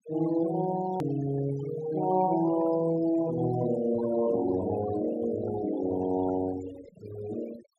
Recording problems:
noise reduction artefacts; signal-to-artefact ratio 14 dB
click at an edit; at 1 s

